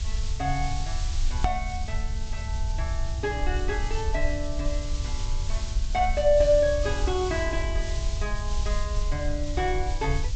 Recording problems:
low-pass filter; nothing above 8 kHz
hiss; slope +2 dB per octave, SNR 13 dB
rumble; below 62 Hz, SNR 3 dB
edit click; at 1.5 s

